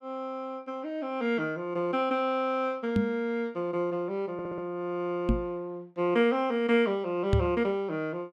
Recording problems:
microphone bump; at 3 s, at 5.5 s and at 7.5 s; peak +7 dB vs average level
audio stuttering; at 4.5 s

